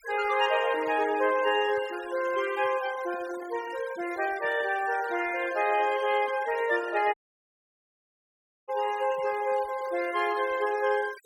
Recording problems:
denoising artefacts; signal-to-artefact ratio 17 dB
dropout; at 7 s for 1.5 s

